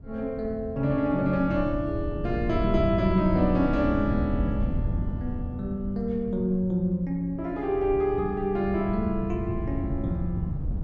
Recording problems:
wind on the microphone; below 150 Hz, SNR 6 dB

